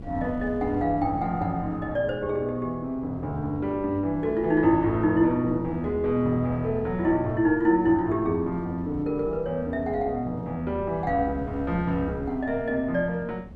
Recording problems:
wind noise; below 220 Hz, SNR 18 dB

